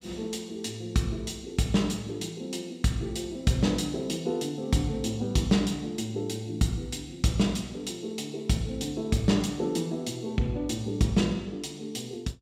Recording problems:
none

